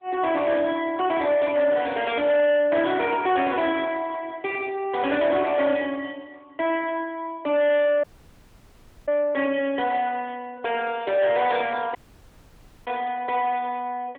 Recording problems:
telephone audio; 260 Hz to 3.5 kHz, AMR-NB
distortion; soft clipping, signal-to-distortion ratio 10 dB
dropout; at 8 s for 1 s and at 12 s for 1 s

